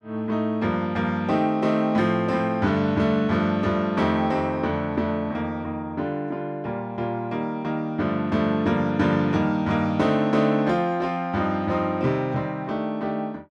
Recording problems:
none

